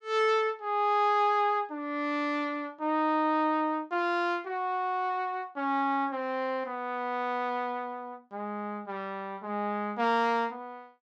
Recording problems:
none

